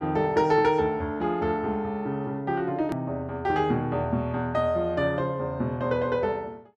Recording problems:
hard cut with a click; at 3 s

